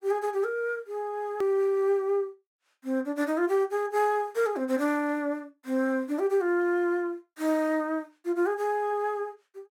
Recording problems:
hard cut with a click; at 1.5 s

